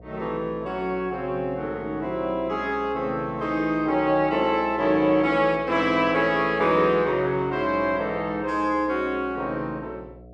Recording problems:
hum; 60 Hz, harmonics up to 720 Hz, SNR 23 dB

